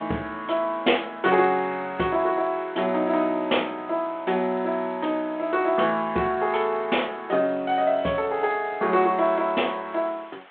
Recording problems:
telephone audio; 280 Hz to 3.4 kHz, G.726
hiss; SNR 25 dB

